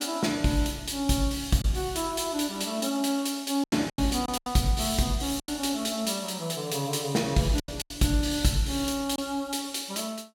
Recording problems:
packet loss; 5% of the sound replaced, filled with silence

